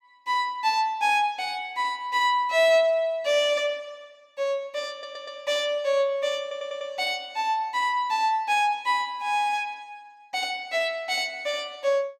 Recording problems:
audio stuttering; at 5 s and at 6.5 s

